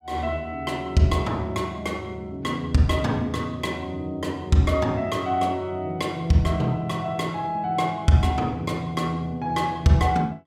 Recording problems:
none

